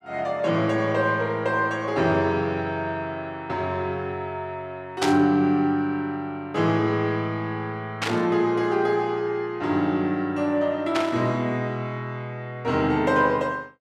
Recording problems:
burst of static; at 5 s, at 8 s and at 11 s; peak +2 dB vs average level

